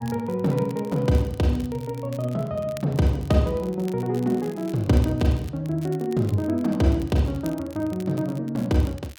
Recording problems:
crackling; vinyl, SNR 24 dB

